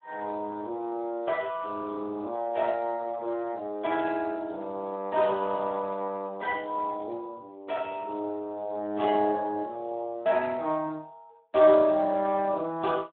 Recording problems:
telephone audio; 220 Hz to 3.4 kHz, Speex

